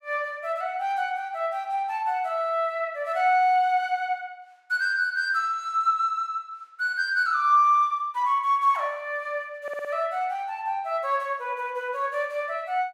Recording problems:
stutter; at 9.5 s

